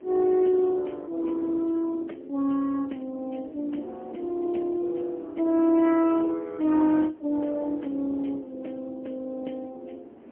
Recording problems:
phone line; 220 Hz to 3.4 kHz, AMR-NB, then MP3
wind noise; below 480 Hz, SNR 24 dB

